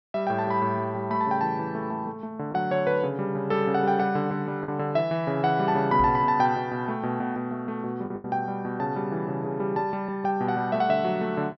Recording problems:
treble cut off; nothing above 5.9 kHz
packet loss; 1.6% of the sound replaced, filled with the last packet
microphone thump; at 6 s; peak -4 dB vs average level

